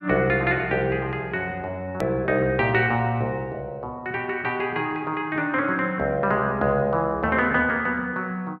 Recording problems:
click at an edit; at 2 s

